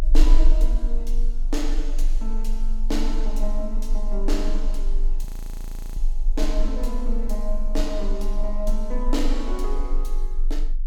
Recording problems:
low-frequency rumble; below 30 Hz, strongest tone 22 Hz, SNR -5 dB
audio freezing; at 5.5 s for 0.5 s

